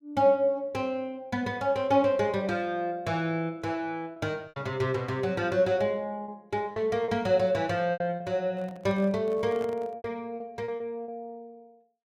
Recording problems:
packet loss; 6% of the sound replaced, filled with repeated pitch periods
handling noise; from 8.5 to 10 s; peak -11 dB vs average level

